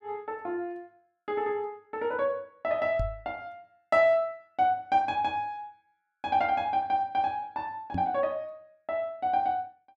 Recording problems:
microphone thump; at 3 s and at 8 s; peak 0 dB vs average level

